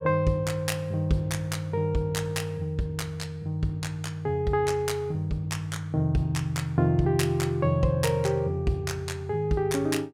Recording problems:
none

